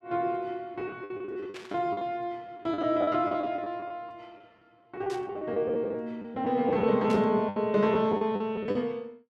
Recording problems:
lost packets; 14% of the sound replaced, filled with the last packet
burst of static; at 1.5 s, at 5 s and at 7 s; peak -9 dB vs average level

